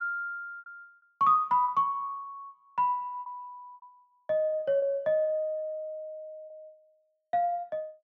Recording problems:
lost packets; 6% of the sound replaced, filled with repeated pitch periods

